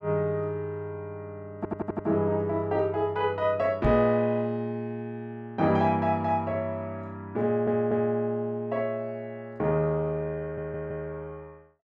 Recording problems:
audio stuttering; at 1.5 s, at 7.5 s and at 10 s
microphone bump; at 4 s; peak +4 dB vs average level

